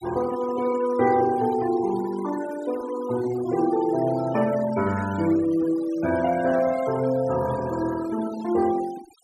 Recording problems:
denoising artefacts; signal-to-artefact ratio 16 dB

